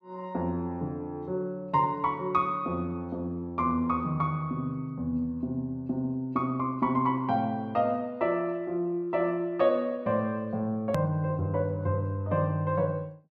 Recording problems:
edit click; at 11 s

